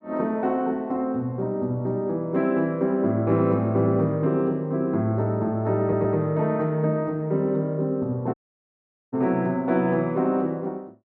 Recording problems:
stutter; at 6 s
audio cutting out; at 8.5 s for 1 s

